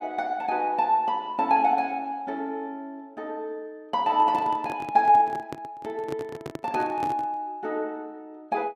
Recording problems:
handling noise; from 4 to 7.5 s; peak -4 dB vs average level

